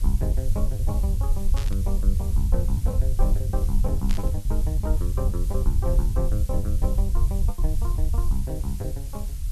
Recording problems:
hiss; slope +2 dB per octave, SNR 11 dB
low-frequency rumble; below 68 Hz, SNR -8 dB
lost packets; 5% of the sound replaced, filled with the last packet
static burst; at 1.5 s and at 4 s; peak 0 dB vs average level

